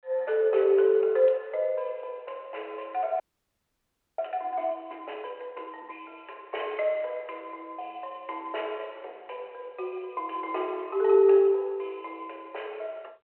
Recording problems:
phone line; 340 Hz to 3.4 kHz, G.726
audio freezing; at 3 s for 1 s

